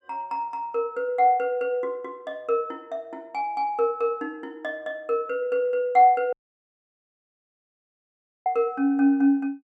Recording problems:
dropout; at 6.5 s for 2 s

